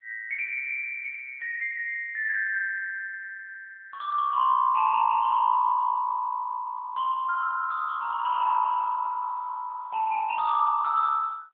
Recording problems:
phone line; 150 Hz to 2.6 kHz, AMR-NB

